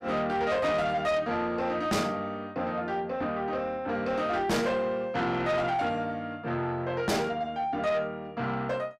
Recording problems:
distorted audio; soft clipping, signal-to-distortion ratio 8 dB

